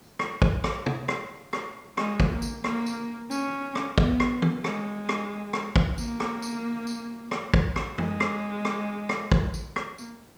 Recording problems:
background hiss; slope -5 dB per octave, SNR 26 dB

